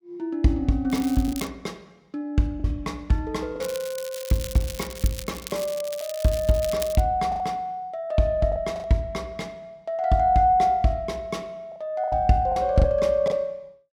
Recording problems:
packet loss; 4% of the sound replaced, filled with the last packet
crackle; at 1 s, from 3.5 to 5.5 s and from 5.5 to 7 s; loose cable, SNR 13 dB

